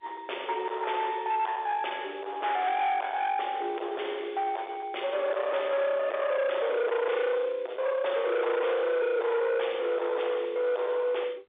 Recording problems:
telephone audio; 370 Hz to 3.6 kHz, G.711
distorted audio; hard clipping, signal-to-distortion ratio 7 dB

